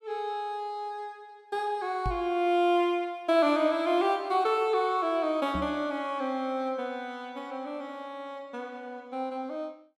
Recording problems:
knock on the microphone; at 2 s and at 5.5 s; peak -1 dB vs average level

